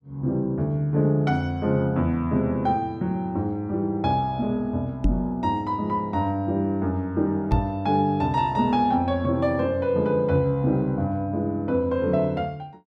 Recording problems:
microphone bump; at 5 s and at 7.5 s; peak +5 dB vs average level

